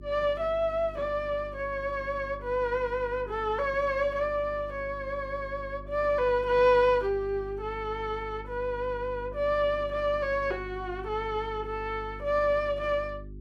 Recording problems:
hum; 50 Hz, harmonics up to 400 Hz, SNR 16 dB

